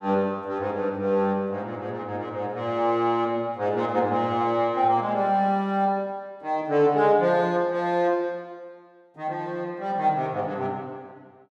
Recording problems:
none

